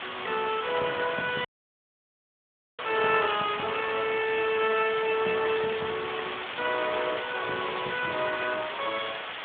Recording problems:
telephone audio; 240 Hz to 3.4 kHz, Speex
hiss; SNR 6 dB
dropout; at 1.5 s for 1.5 s

